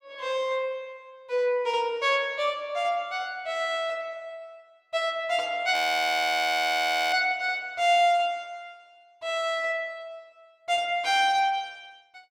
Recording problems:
audio freezing; at 5.5 s for 1.5 s

